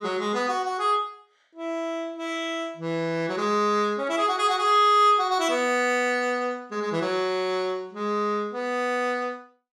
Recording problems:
none

